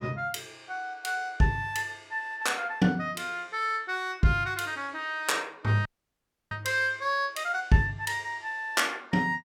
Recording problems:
dropout; at 6 s for 0.5 s

